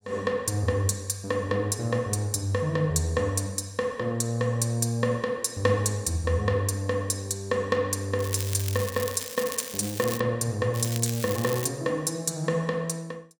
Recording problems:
crackling; from 8 to 10 s and at 11 s; loose cable, SNR 9 dB

